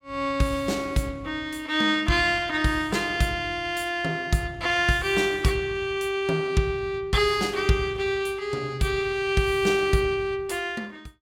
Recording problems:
none

